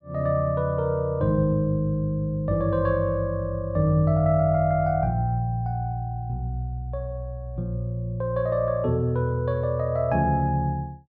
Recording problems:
none

